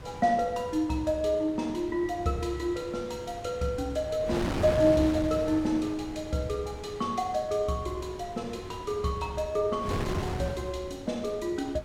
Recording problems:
wind on the microphone; below 700 Hz, SNR 10 dB

